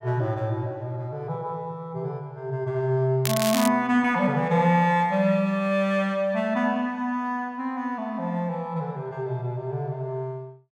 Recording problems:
crackle; at 3.5 s; loose cable, SNR 5 dB

